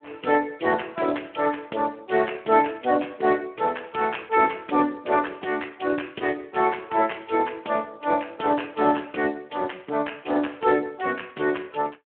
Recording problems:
telephone audio; 260 Hz to 3.1 kHz, Speex

